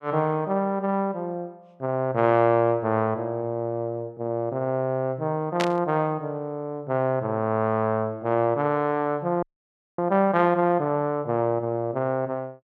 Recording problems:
burst of static; at 5.5 s; peak +1 dB vs average level
frozen audio; at 9.5 s for 0.5 s

